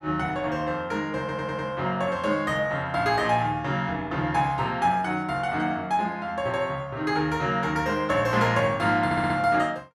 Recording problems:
audio stuttering; at 1 s and at 9 s

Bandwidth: 13.5 kHz